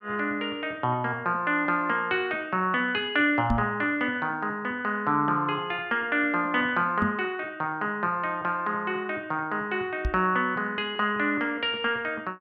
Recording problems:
microphone bump; at 3.5 s, at 7 s and at 10 s; peak +3 dB vs average level

